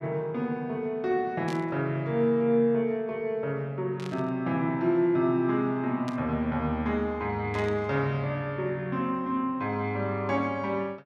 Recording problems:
burst of static; 4 times, first at 1.5 s; peak -10 dB vs average level

